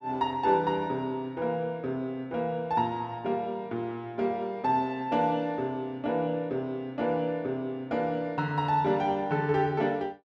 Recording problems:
none

